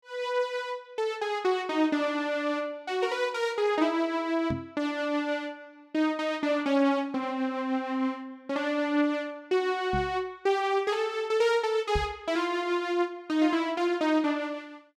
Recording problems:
knock on the microphone; at 4.5 s, at 10 s and at 12 s; peak 0 dB vs average level

